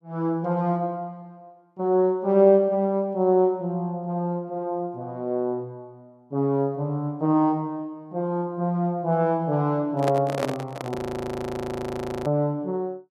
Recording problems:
handling noise; from 10 to 11 s; peak +2 dB vs average level
audio freezing; at 11 s for 1.5 s

